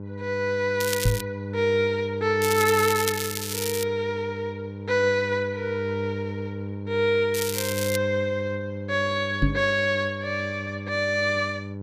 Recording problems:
hum; 50 Hz, harmonics up to 900 Hz, SNR 9 dB
crackle; at 1 s, from 2.5 to 4 s and at 7.5 s; loose cable, SNR 5 dB
knock on the microphone; at 1 s and at 9.5 s; peak +7 dB vs average level

